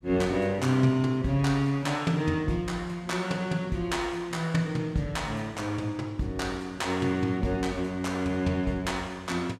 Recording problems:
none

